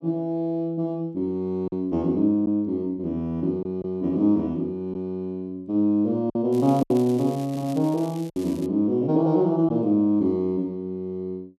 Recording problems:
packet loss; 3% of the sound replaced, filled with silence
crackling; from 6.5 to 8.5 s; loose cable, SNR 23 dB

